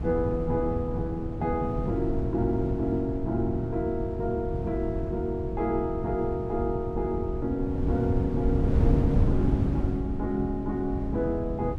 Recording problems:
wind noise; below 180 Hz, SNR 1 dB

